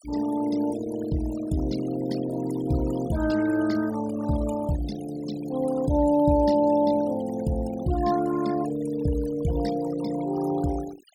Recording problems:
denoising artefacts; signal-to-artefact ratio 15 dB

